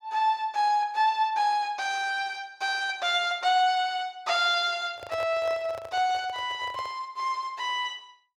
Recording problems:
microphone handling noise; from 5 to 7 s; peak -7 dB vs average level

